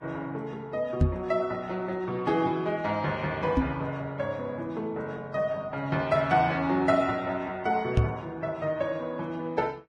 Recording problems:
lossy codec; Vorbis, log-spectral distance 2 dB, nothing above 8.7 kHz
knock on the microphone; at 1 s, at 3.5 s and at 8 s; peak +9 dB vs average level

